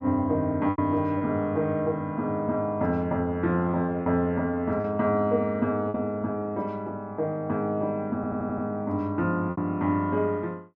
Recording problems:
packet loss; 3% of the sound replaced, filled with repeated pitch periods
audio stuttering; at 8 s

